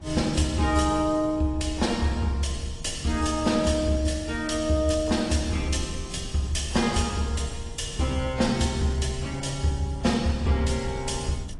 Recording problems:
codec artefacts; AAC, log-spectral distance 4 dB
rumble; below 120 Hz, SNR 15 dB

